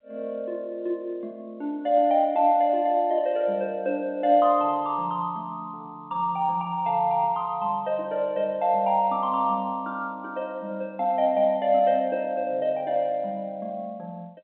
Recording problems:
phone line; 220 Hz to 3.5 kHz, G.711

